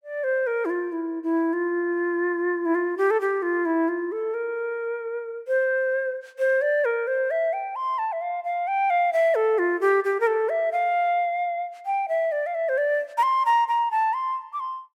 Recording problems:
none

